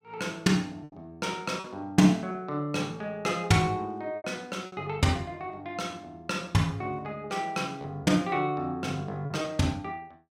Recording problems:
lost packets; 4% of the sound replaced, filled with repeated pitch periods

